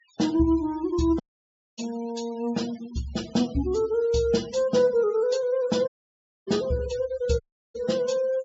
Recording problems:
low-pass filter; nothing above 8 kHz
noise reduction artefacts; signal-to-artefact ratio 20 dB
dropout; at 1 s for 0.5 s, at 6 s for 0.5 s and at 7.5 s

